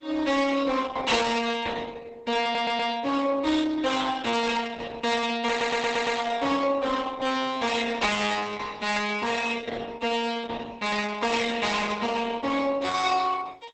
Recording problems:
codec artefacts; Opus, log-spectral distance 5 dB, nothing above 8 kHz
distortion; soft clipping, signal-to-distortion ratio 6 dB
audio stuttering; at 2.5 s and at 5.5 s
burst of static; at 4.5 s, at 9 s and at 12 s; peak -11 dB vs average level

